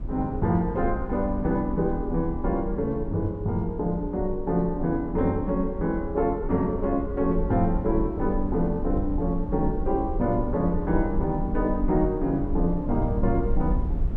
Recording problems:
rumble; below 64 Hz, SNR 7 dB

